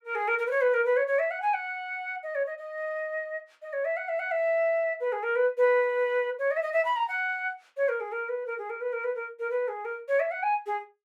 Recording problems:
none

